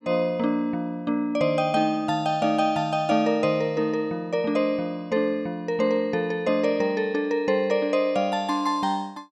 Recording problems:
none

